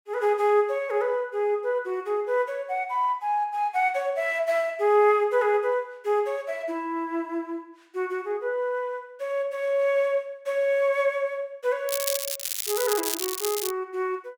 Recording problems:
crackling; from 12 to 14 s; loose cable, SNR 3 dB

